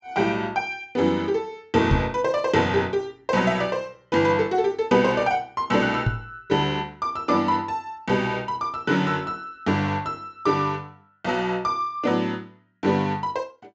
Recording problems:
treble cut off; nothing above 8 kHz
knock on the microphone; at 2 s and at 6 s; peak +6 dB vs average level

